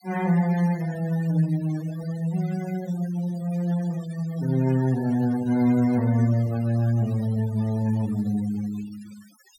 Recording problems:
noise reduction artefacts; signal-to-artefact ratio 19 dB

